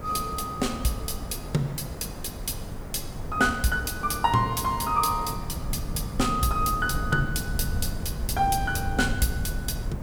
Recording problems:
hum; 50 Hz, harmonics up to 850 Hz, SNR 20 dB
background hiss; SNR 15 dB
rumble; below 120 Hz, SNR 8 dB

